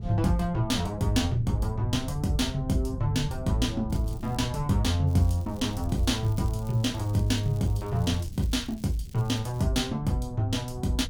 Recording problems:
wind noise; below 120 Hz, SNR 11 dB
crackling; at 4 s and from 5 to 9.5 s; loose cable, SNR 25 dB

